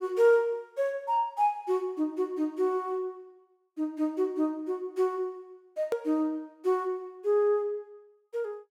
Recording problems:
edit click; at 6 s

